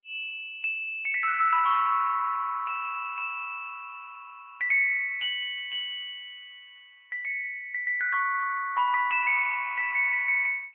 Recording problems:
telephone audio; 990 Hz to 2.6 kHz, AMR-NB

